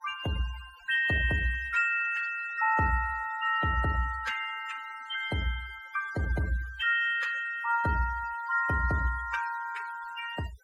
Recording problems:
denoising artefacts; signal-to-artefact ratio 15 dB

